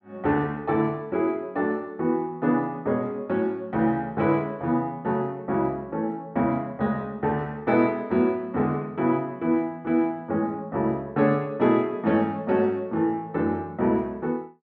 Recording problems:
none

